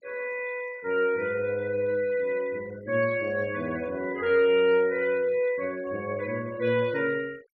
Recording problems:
denoising artefacts; signal-to-artefact ratio 24 dB

